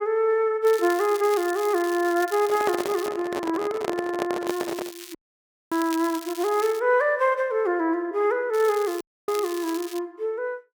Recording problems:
crackle; from 0.5 to 3 s, from 4.5 to 7 s and from 8.5 to 10 s; loose cable, SNR 15 dB
handling noise; from 2.5 to 5 s; peak 0 dB vs average level
audio cutting out; at 5 s for 0.5 s and at 9 s

